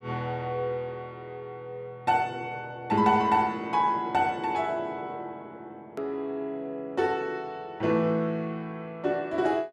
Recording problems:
click at an edit; at 6 s

